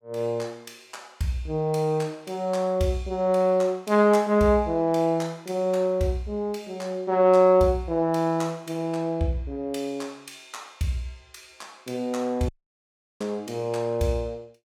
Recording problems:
dropout; at 12 s for 0.5 s

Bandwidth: 17.5 kHz